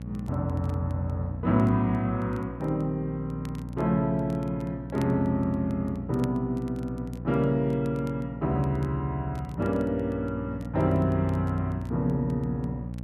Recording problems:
hum; 60 Hz, harmonics up to 600 Hz, SNR 10 dB
crackling; vinyl, SNR 29 dB

